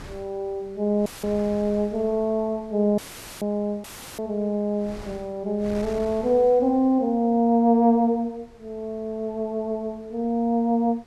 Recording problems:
wind on the microphone; below 1.1 kHz, SNR 23 dB
dropout; at 1 s, at 3 s and at 4 s; filled with static

